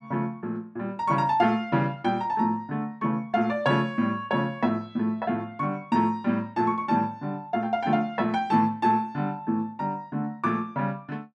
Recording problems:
none

